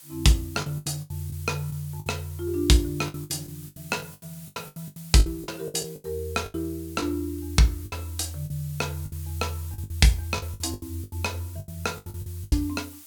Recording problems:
background hiss; slope +2 dB per octave, SNR 17 dB
lost packets; 16% of the sound replaced, filled with the last packet

